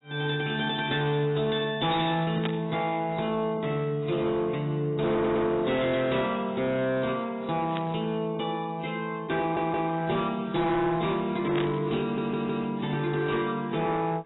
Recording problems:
lossy compression; AAC, log-spectral distance 3 dB, nothing above 3.8 kHz
distorted audio; hard clipping, uneven, signal-to-distortion ratio 11 dB
burst of static; at 2.5 s, at 8 s and at 12 s; peak -3 dB vs average level
audio stuttering; at 5 s, at 9.5 s and at 12 s

